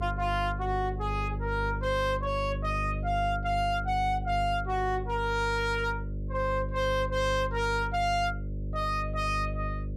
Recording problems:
distortion; hard clipping, signal-to-distortion ratio 6 dB
electrical hum; 50 Hz, harmonics up to 600 Hz, SNR 5 dB

